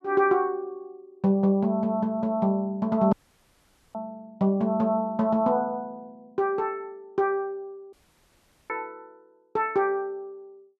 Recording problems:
audio cutting out; at 3 s for 1 s and at 8 s for 1 s

